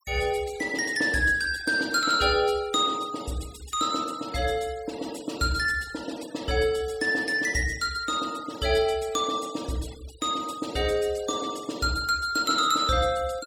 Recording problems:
noise reduction artefacts; signal-to-artefact ratio 19 dB

